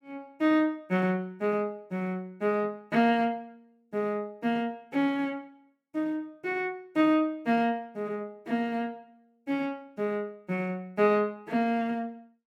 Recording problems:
none

